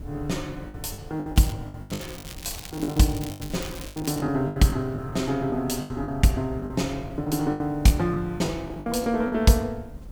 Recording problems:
hiss; SNR 30 dB
wind on the microphone; below 130 Hz, SNR 17 dB
packet loss; 16% of the sound replaced, filled with the last packet
crackling; at 1.5 s and from 2 to 4 s; loose cable, SNR 15 dB

